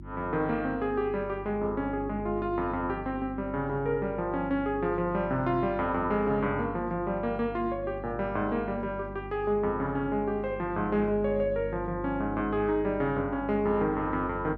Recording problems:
hum; 50 Hz, harmonics up to 350 Hz, SNR 13 dB

